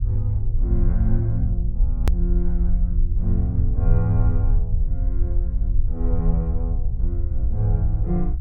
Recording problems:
low-frequency rumble; below 62 Hz, SNR -3 dB
hard cut with a click; at 2 s

